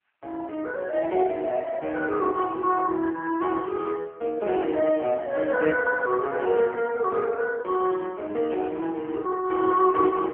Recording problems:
phone line; 280 Hz to 3.1 kHz, AMR-NB
burst of static; at 2.5 s, at 4.5 s and at 8.5 s; peak -12 dB vs average level

